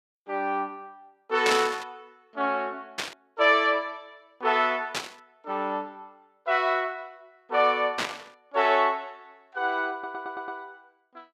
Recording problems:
static burst; 4 times, first at 1.5 s; peak +3 dB vs average level
audio stuttering; at 10 s

